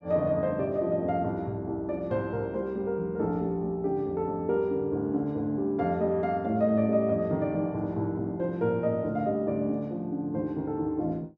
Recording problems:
none

